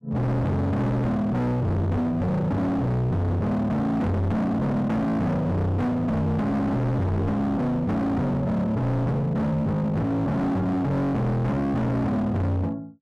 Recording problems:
distortion; hard clipping, signal-to-distortion ratio 6 dB

